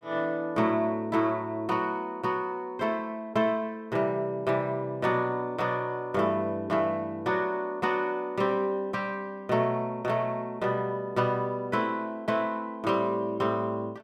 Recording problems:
none

